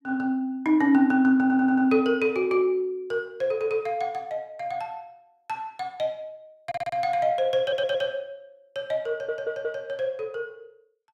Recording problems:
audio stuttering; 4 times, first at 1.5 s

